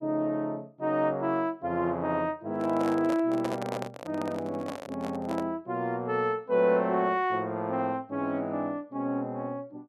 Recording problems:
microphone handling noise; from 2.5 to 5.5 s; peak 0 dB vs average level

